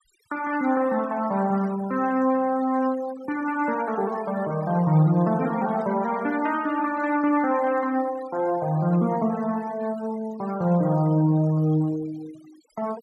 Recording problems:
noise reduction artefacts; signal-to-artefact ratio 20 dB

